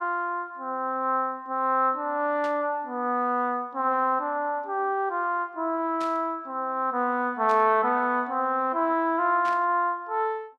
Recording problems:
burst of static; 4 times, first at 2.5 s; peak -12 dB vs average level

